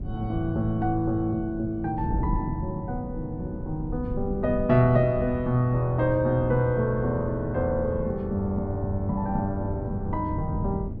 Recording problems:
wind on the microphone; below 190 Hz, SNR 8 dB

